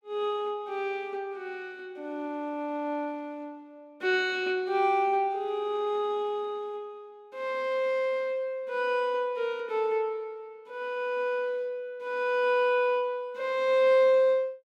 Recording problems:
none

